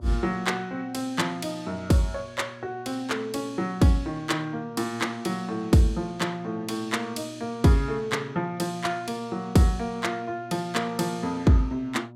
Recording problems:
hum; 60 Hz, harmonics up to 960 Hz, SNR 19 dB

